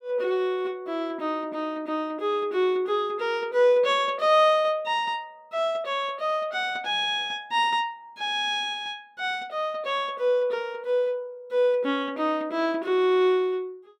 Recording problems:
none

